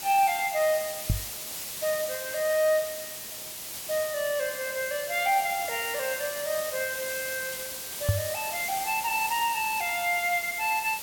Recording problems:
hiss; SNR 6 dB
microphone bump; at 1 s and at 8 s; peak +7 dB vs average level

